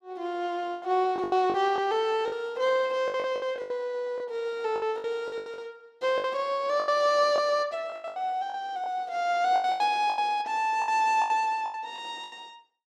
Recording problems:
packet loss; 15% of the sound replaced, filled with the last packet

